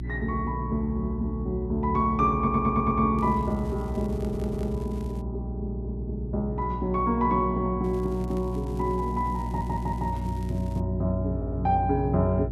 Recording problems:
hum; 60 Hz, harmonics up to 360 Hz, SNR 6 dB
stutter; 4 times, first at 2.5 s
crackle; from 3 to 5 s and from 8 to 11 s; loose cable, SNR 26 dB

